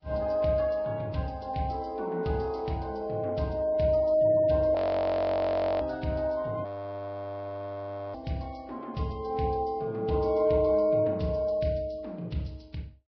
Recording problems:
codec artefacts; Vorbis, log-spectral distance 2 dB, nothing above 5.2 kHz
audio freezing; at 5 s for 1 s and at 6.5 s for 1.5 s

